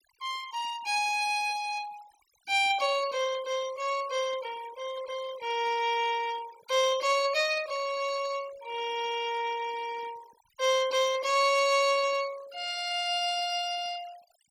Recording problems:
denoising artefacts; signal-to-artefact ratio 18 dB

